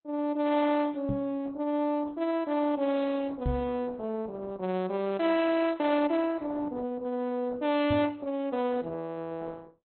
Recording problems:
low-pass filter; nothing above 4.1 kHz
lossy codec; Opus, log-spectral distance 2 dB
knock on the microphone; at 1 s, at 3.5 s and at 8 s; peak +2 dB vs average level

